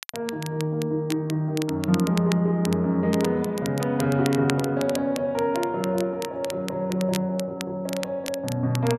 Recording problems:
crackling; vinyl, SNR 13 dB

